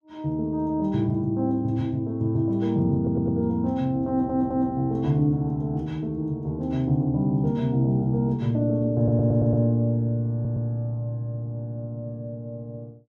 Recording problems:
audio stuttering; 4 times, first at 3 s

